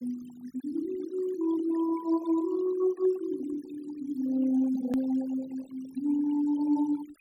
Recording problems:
noise reduction artefacts; signal-to-artefact ratio 20 dB
hard cut with a click; at 5 s

